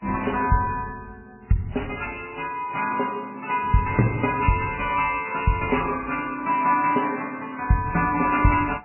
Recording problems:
lossy codec; MP3, then AAC, log-spectral distance 5 dB, nothing above 2.4 kHz

